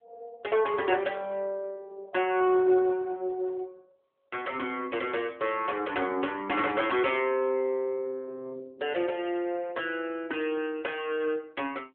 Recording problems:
phone line; 240 Hz to 3.4 kHz, AMR-NB

